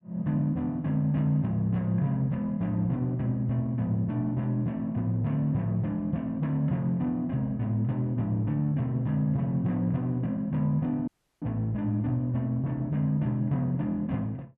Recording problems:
audio cutting out; at 11 s

